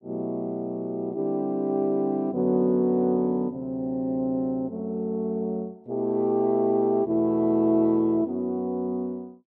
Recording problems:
none

